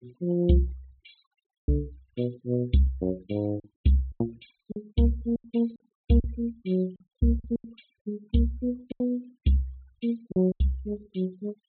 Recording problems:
treble cut off; nothing above 4 kHz
noise reduction artefacts; signal-to-artefact ratio 26 dB
lost packets; 8% of the sound replaced, filled with silence

